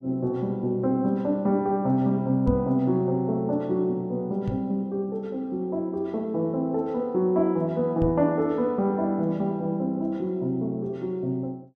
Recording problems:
microphone bump; at 2.5 s, at 4.5 s and at 8 s; peak +1 dB vs average level

